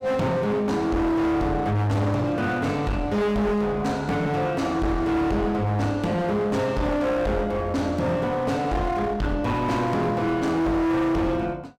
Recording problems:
distorted audio; hard clipping, uneven, signal-to-distortion ratio 6 dB

